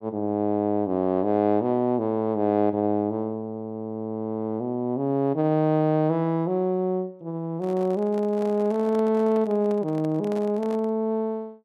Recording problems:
handling noise; from 7.5 to 11 s; peak -11 dB vs average level

